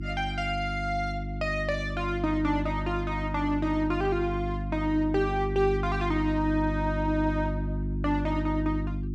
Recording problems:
hum; 50 Hz, harmonics up to 350 Hz, SNR 4 dB

